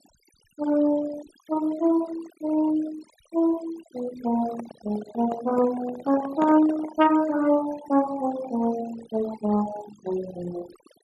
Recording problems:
noise reduction artefacts; signal-to-artefact ratio 16 dB
handling noise; from 4.5 to 7 s; peak -1 dB vs average level

